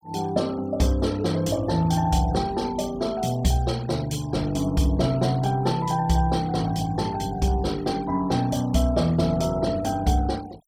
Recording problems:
noise reduction artefacts; signal-to-artefact ratio 21 dB

